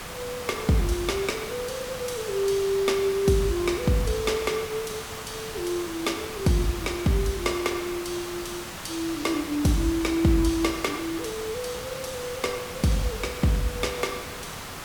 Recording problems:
hiss; slope -3 dB per octave, SNR 9 dB

